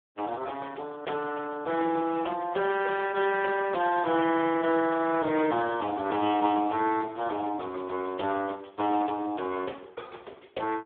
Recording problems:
telephone audio; 280 Hz to 3.5 kHz, Speex

